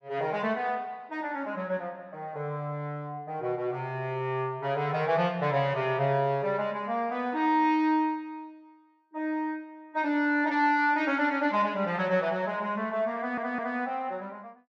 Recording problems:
stutter; at 13 s

